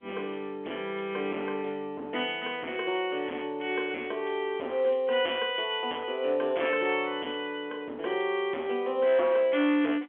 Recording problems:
phone line; 240 Hz to 3.4 kHz, G.711
distorted audio; hard clipping, signal-to-distortion ratio 10 dB

